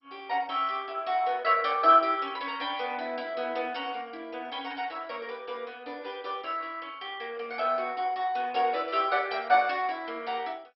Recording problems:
lossy compression; MP2, log-spectral distance 3 dB, nothing above 5.2 kHz

